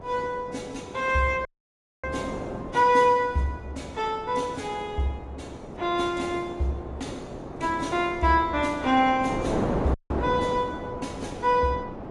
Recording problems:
lossy codec; AAC, log-spectral distance 2 dB, nothing above 10.4 kHz
wind on the microphone; below 650 Hz, SNR 9 dB
dropout; at 1.5 s for 0.5 s and at 10 s

